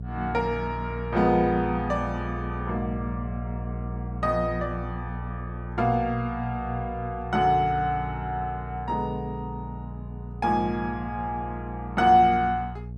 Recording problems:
electrical hum; 60 Hz, harmonics up to 480 Hz, SNR 9 dB

